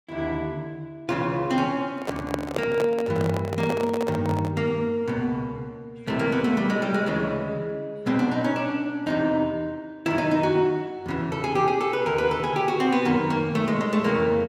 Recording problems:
microphone handling noise; from 2 to 4.5 s; peak +1 dB vs average level

